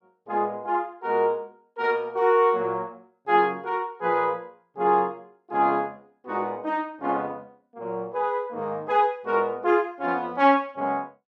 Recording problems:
none

